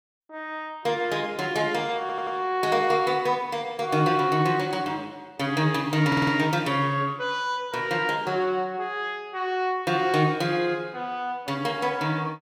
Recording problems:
audio stuttering; at 2 s and at 6 s

